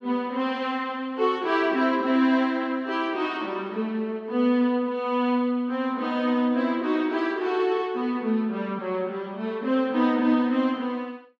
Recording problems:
none

